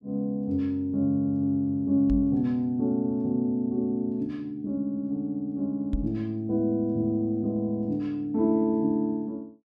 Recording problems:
microphone bump; at 2 s and at 6 s; peak +1 dB vs average level

